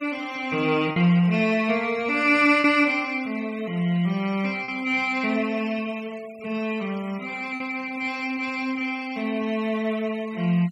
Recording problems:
noise reduction artefacts; signal-to-artefact ratio 23 dB
packet loss; 1.5% of the sound replaced, filled with repeated pitch periods

